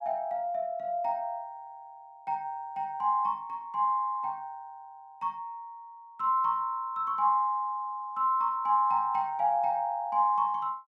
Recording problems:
none

